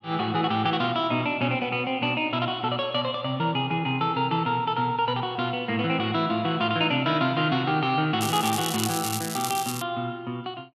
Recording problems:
crackle; from 8 to 10 s; loose cable, SNR 6 dB

